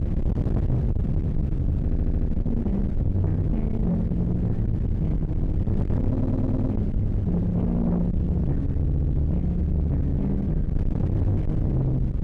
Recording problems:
distorted audio; soft clipping, signal-to-distortion ratio 8 dB
wind noise; below 160 Hz, SNR 1 dB
stutter; at 2 s, at 6 s and at 9 s

